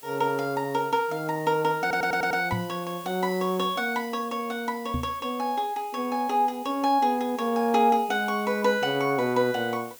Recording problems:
background hiss; slope 0 dB per octave, SNR 20 dB
audio stuttering; at 2 s
microphone thump; at 2.5 s and at 5 s; peak 0 dB vs average level

